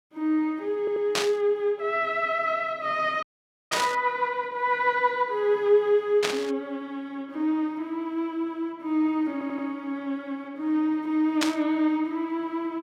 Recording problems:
stutter; at 1 s and at 9.5 s
static burst; 4 times, first at 1 s; peak +4 dB vs average level
frozen audio; at 3 s

